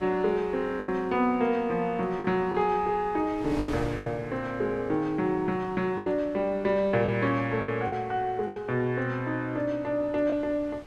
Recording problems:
wind on the microphone; below 860 Hz, SNR 19 dB
lost packets; 6% of the sound replaced, filled with the last packet

